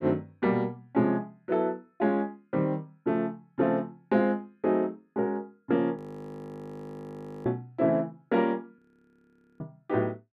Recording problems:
audio freezing; at 6 s for 1.5 s and at 9 s for 1 s

